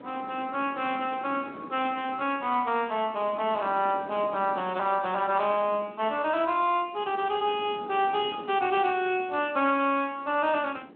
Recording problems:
telephone audio; 220 Hz to 3.6 kHz, Speex
wind on the microphone; below 550 Hz, SNR 18 dB

